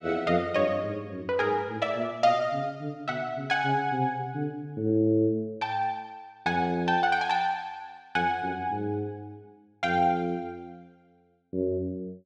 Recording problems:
none

